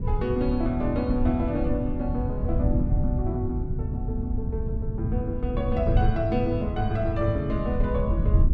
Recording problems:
low-frequency rumble; below 110 Hz, SNR 0 dB

